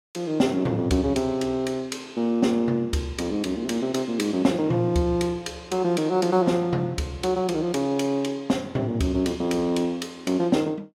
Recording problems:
none

